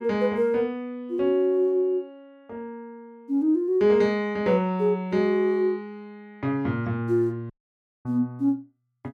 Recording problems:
dropout; at 7.5 s for 0.5 s

